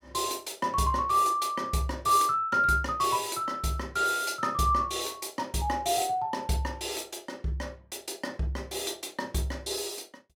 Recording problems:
none

